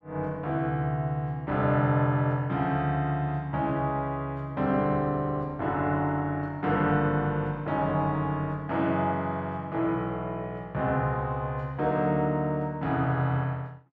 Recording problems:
none

